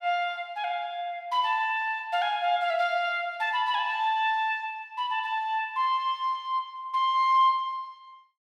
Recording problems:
none

